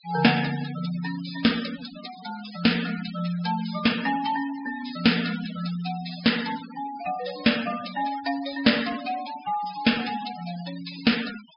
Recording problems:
treble cut off; nothing above 5.5 kHz
noise reduction artefacts; signal-to-artefact ratio 12 dB

